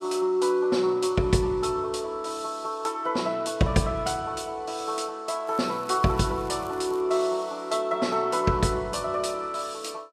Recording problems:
lossy compression; Vorbis, log-spectral distance 2 dB, nothing above 12.3 kHz
crackle; from 5.5 to 7 s; loose cable, SNR 25 dB

